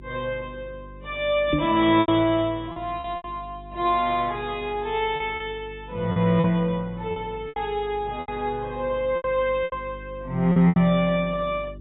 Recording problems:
lossy codec; AAC, log-spectral distance 2 dB, nothing above 3.3 kHz
hum; 50 Hz, harmonics up to 400 Hz, SNR 19 dB
lost packets; 8% of the sound replaced, filled with repeated pitch periods
knock on the microphone; at 1.5 s; peak +4 dB vs average level

